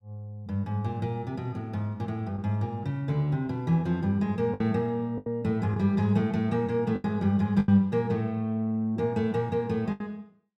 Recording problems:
lost packets; 4% of the sound replaced, filled with the last packet

